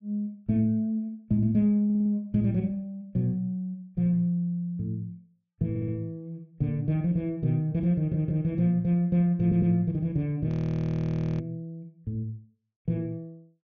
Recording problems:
low-pass filter; nothing above 6.5 kHz
stutter; 4 times, first at 2 s
frozen audio; at 10 s for 1 s

